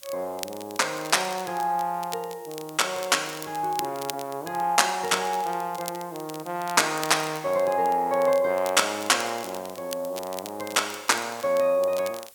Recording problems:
hiss; slope +1 dB per octave, SNR 23 dB
crackling; vinyl, SNR 16 dB

